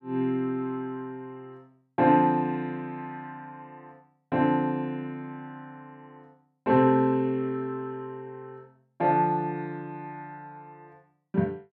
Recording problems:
none

